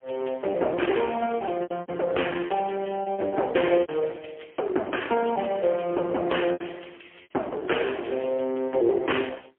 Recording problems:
telephone audio; 280 Hz to 3.2 kHz, AMR-NB, then MP3
lost packets; 7% of the sound replaced, filled with repeated pitch periods

